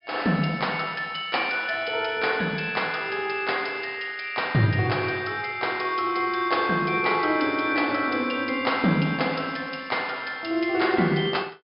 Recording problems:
low-pass filter; nothing above 5.5 kHz

